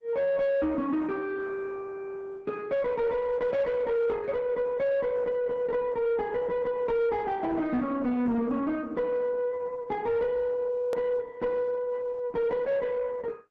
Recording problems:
lossy compression; Opus, log-spectral distance 2 dB, nothing above 13.1 kHz
distortion; soft clipping, signal-to-distortion ratio 11 dB
click at an edit; at 11 s

